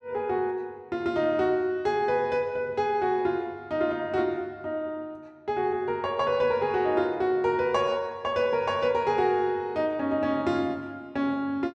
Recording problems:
none

